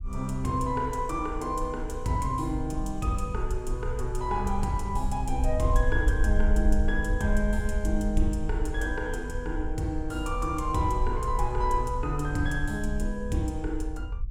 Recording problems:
rumble; below 56 Hz, SNR 3 dB

